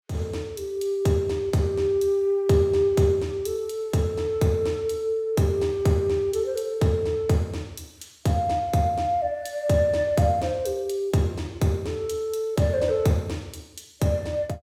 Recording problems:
none

